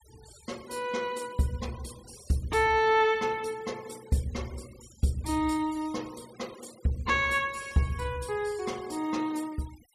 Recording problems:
noise reduction artefacts; signal-to-artefact ratio 21 dB

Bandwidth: 14.5 kHz